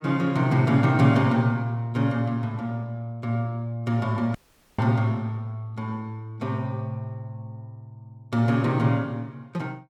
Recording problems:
dropout; at 4.5 s

